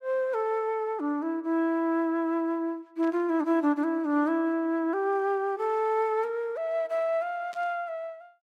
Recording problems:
burst of static; at 3 s and at 7.5 s; peak -16 dB vs average level

